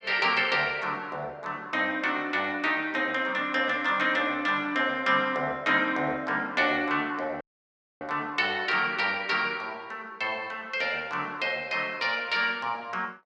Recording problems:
dropout; at 7.5 s for 0.5 s

